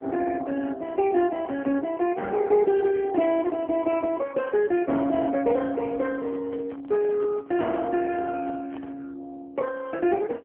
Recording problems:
telephone audio; 240 Hz to 3.3 kHz, AMR-NB
microphone handling noise; from 6 to 9 s; peak -12 dB vs average level

